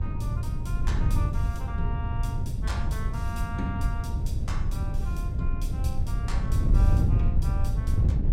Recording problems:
wind on the microphone; below 100 Hz, SNR -11 dB

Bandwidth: 16 kHz